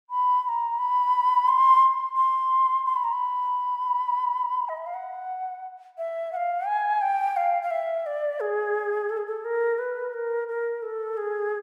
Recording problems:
none

